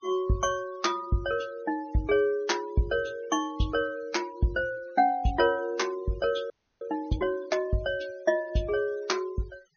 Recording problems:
treble cut off; nothing above 6.5 kHz
noise reduction artefacts; signal-to-artefact ratio 22 dB
frozen audio; at 6.5 s

